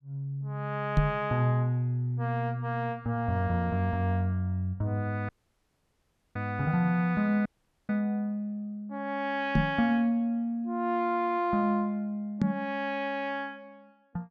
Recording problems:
microphone thump; at 1 s, at 9.5 s and at 12 s; peak +8 dB vs average level
dropout; at 5.5 s for 1 s and at 7.5 s

